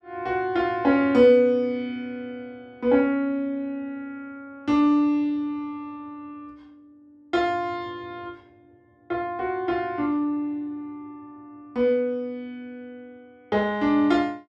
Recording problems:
none

